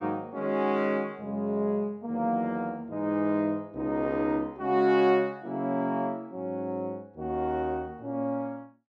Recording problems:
none

